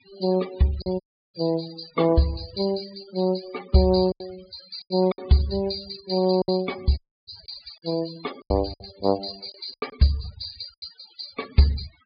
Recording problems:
low-pass filter; nothing above 4.9 kHz
denoising artefacts; signal-to-artefact ratio 19 dB
lost packets; 6% of the sound replaced, filled with silence
dropout; at 1 s and at 7 s

